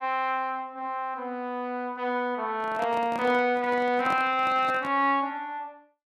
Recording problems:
microphone handling noise; from 2.5 to 5 s; peak -7 dB vs average level

